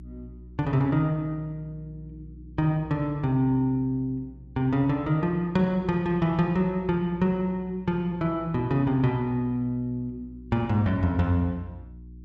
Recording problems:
electrical hum; 60 Hz, harmonics up to 360 Hz, SNR 21 dB

